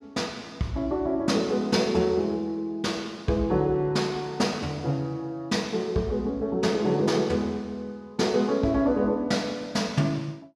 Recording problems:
none

